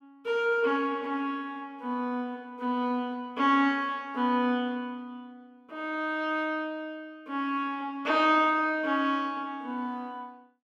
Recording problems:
none

